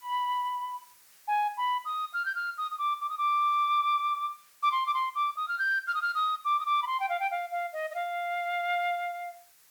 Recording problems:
background hiss; slope +1 dB per octave, SNR 27 dB

